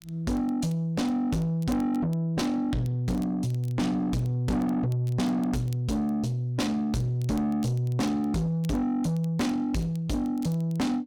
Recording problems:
distortion; soft clipping, signal-to-distortion ratio 8 dB
crackling; vinyl, SNR 28 dB

